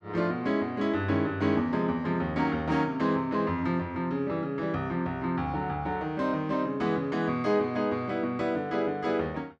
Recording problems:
none

